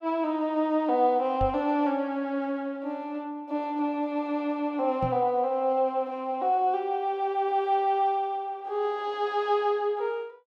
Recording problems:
microphone thump; at 1.5 s and at 5 s; peak -2 dB vs average level

